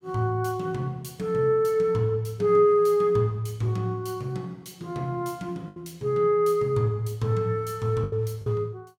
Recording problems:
lost packets; 2% of the sound replaced, filled with the last packet

